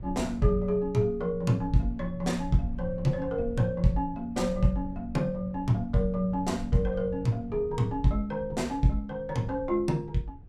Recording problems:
rumble; below 100 Hz, SNR 14 dB

